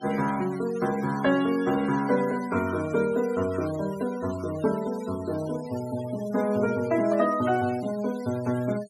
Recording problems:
noise reduction artefacts; signal-to-artefact ratio 18 dB

